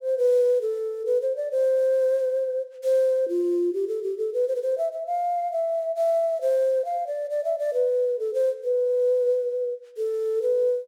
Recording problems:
none

